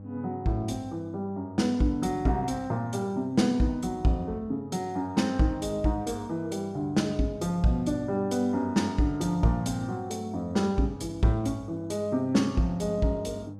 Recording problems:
hum; 50 Hz, harmonics up to 800 Hz, SNR 16 dB

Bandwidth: 14.5 kHz